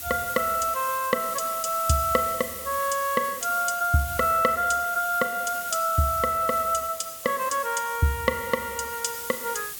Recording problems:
background hiss; SNR 9 dB

